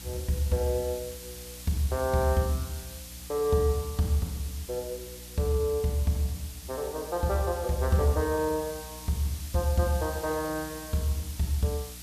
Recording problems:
hum; 60 Hz, harmonics up to 300 Hz, SNR 19 dB
hiss; slope +3 dB per octave, SNR 13 dB

